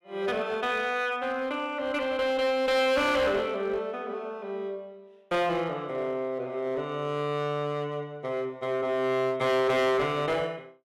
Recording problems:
distortion; hard clipping, uneven, signal-to-distortion ratio 9 dB

